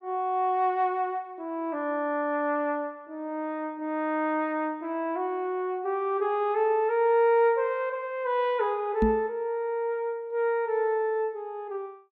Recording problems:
microphone thump; at 9 s; peak +5 dB vs average level

